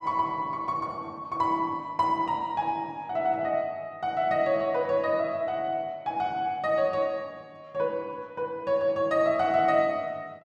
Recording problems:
none

